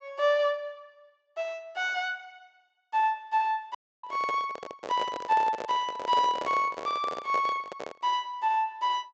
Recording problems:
treble missing; nothing above 8 kHz
audio cutting out; at 4 s
handling noise; from 4 to 8 s; peak -3 dB vs average level

